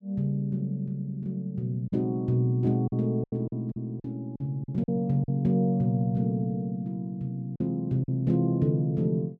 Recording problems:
lost packets; 6% of the sound replaced, filled with silence

